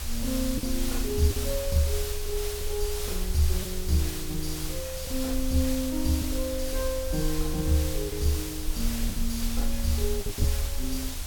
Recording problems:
background hiss; slope 0 dB per octave, SNR 5 dB
rumble; below 48 Hz, strongest tone 20 Hz, SNR 6 dB
packet loss; 3% of the sound replaced, filled with the last packet

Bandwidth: 17.5 kHz